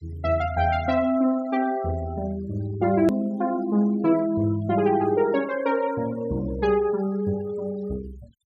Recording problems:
noise reduction artefacts; signal-to-artefact ratio 22 dB
hard cut with a click; at 3 s

